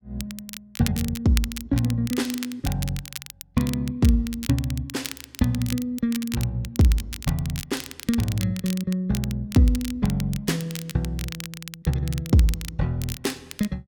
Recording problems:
crackling; vinyl, SNR 12 dB

